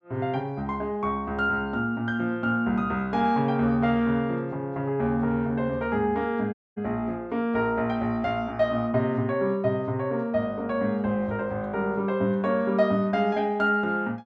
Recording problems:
dropout; at 6.5 s

